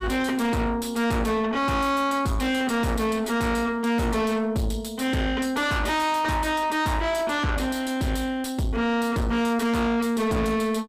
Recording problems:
distorted audio; soft clipping, signal-to-distortion ratio 5 dB

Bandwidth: 15 kHz